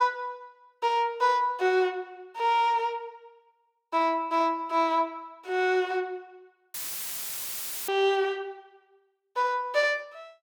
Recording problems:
audio cutting out; at 6.5 s for 1 s; filled with static

